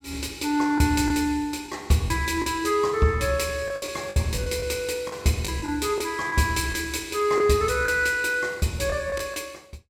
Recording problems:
lost packets; 7% of the sound replaced, filled with the last packet

